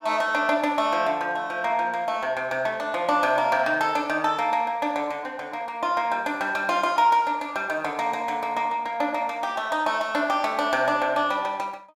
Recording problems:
none

